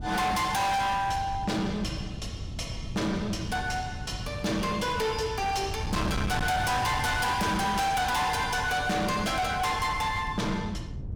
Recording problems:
distortion; hard clipping, signal-to-distortion ratio 7 dB
wind noise; below 220 Hz, SNR 9 dB

